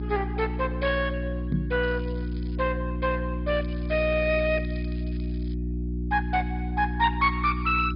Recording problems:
treble missing; nothing above 5 kHz
lossy codec; MP2, log-spectral distance 3 dB
hum; 60 Hz, harmonics up to 360 Hz, SNR 4 dB
knock on the microphone; at 1.5 s; peak +4 dB vs average level
crackling; at 2 s and from 3.5 to 5.5 s; loose cable, SNR 27 dB

